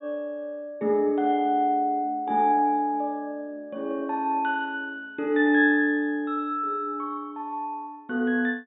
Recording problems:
low-pass filter; nothing above 4 kHz

